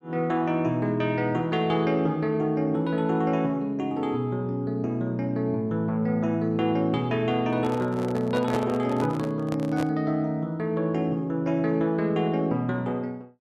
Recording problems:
handling noise; from 7.5 to 10 s; peak -1 dB vs average level

